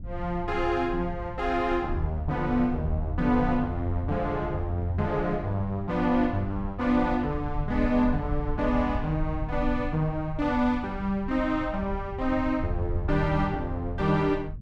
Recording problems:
low-frequency rumble; below 86 Hz, SNR 9 dB

